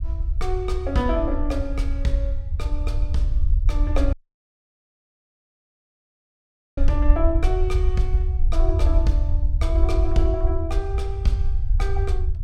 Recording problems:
rumble; below 64 Hz, SNR -4 dB
dropout; at 4 s for 2.5 s

